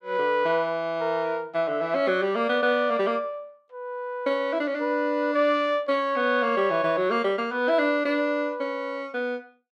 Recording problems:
none

